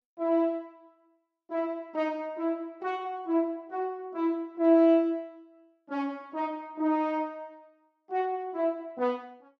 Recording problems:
none

